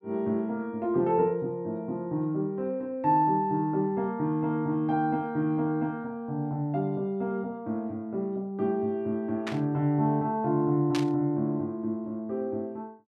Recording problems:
static burst; at 9.5 s and at 11 s; peak -1 dB vs average level

